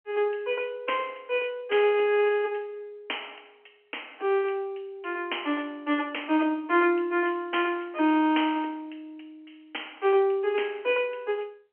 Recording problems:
phone line; 260 Hz to 3.2 kHz, G.711

